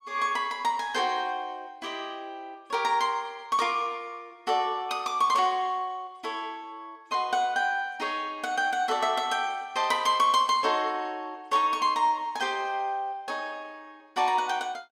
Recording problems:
none

